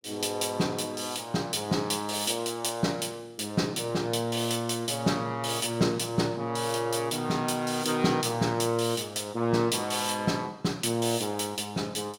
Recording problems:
none

